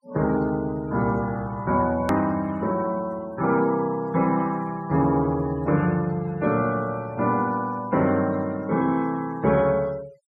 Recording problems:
denoising artefacts; signal-to-artefact ratio 24 dB
click at an edit; at 2 s

